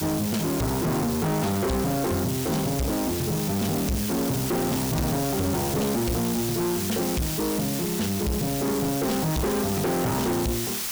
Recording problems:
distortion; soft clipping, signal-to-distortion ratio 6 dB
background hiss; slope +1 dB per octave, SNR 4 dB

